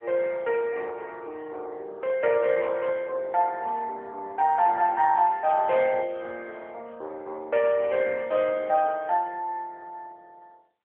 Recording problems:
phone line; 320 Hz to 3.1 kHz, AMR-NB

